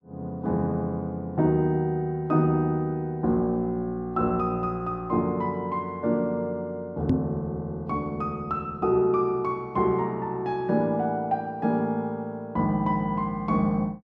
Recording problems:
microphone bump; at 7 s; peak +7 dB vs average level

